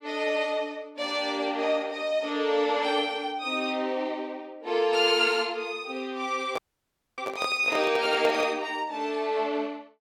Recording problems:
handling noise; from 6.5 to 8.5 s; peak -1 dB vs average level
dropout; at 6.5 s for 0.5 s

